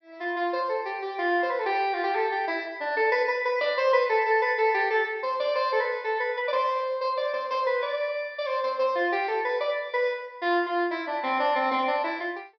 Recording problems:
treble cut off; nothing above 5.5 kHz

